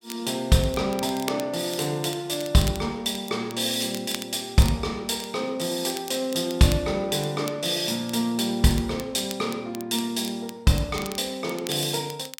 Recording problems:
crackle; vinyl, SNR 15 dB

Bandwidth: 16.5 kHz